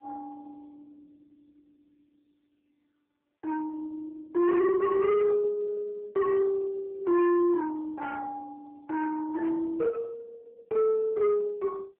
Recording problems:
telephone audio; 950 Hz to 2.2 kHz, AMR-NB
distorted audio; soft clipping, signal-to-distortion ratio 7 dB

